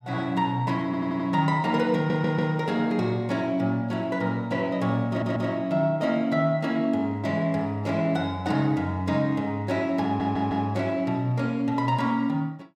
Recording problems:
stutter; 4 times, first at 1 s

